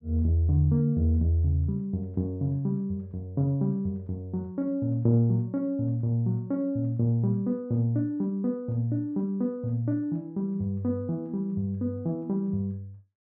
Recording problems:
none

